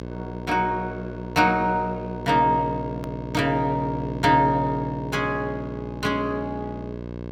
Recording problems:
hum; 60 Hz, harmonics up to 1.1 kHz, SNR 10 dB
edit click; at 3 s

